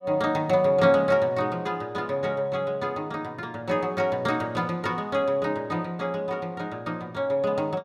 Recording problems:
none

